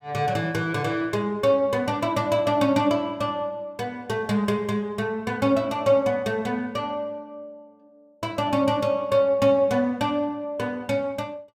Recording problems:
none

